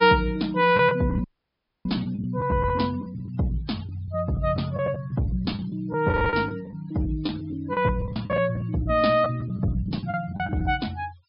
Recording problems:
treble missing; nothing above 5.5 kHz
denoising artefacts; signal-to-artefact ratio 24 dB
lost packets; 11% of the sound replaced, filled with the last packet
audio cutting out; at 1 s for 0.5 s

